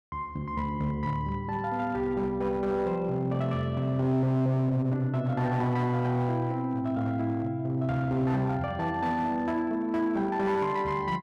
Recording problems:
distorted audio; hard clipping, signal-to-distortion ratio 11 dB

